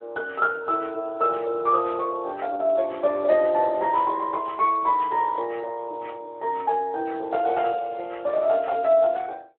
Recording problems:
phone line; 340 Hz to 2.8 kHz, Speex

